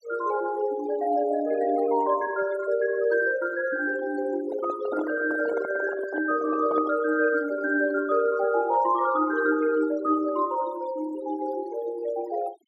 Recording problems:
denoising artefacts; signal-to-artefact ratio 17 dB
microphone handling noise; from 4.5 to 7 s; peak -3 dB vs average level

